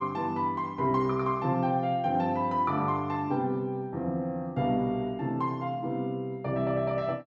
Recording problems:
none

